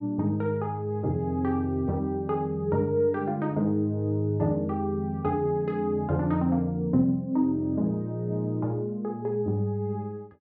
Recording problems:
none

